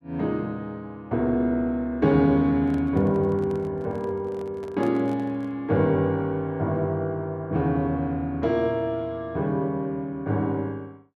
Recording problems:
microphone handling noise; from 2.5 to 5.5 s; peak -11 dB vs average level

